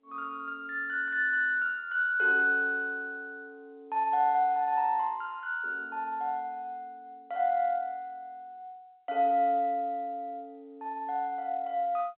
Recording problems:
phone line; 320 Hz to 3.7 kHz, G.711

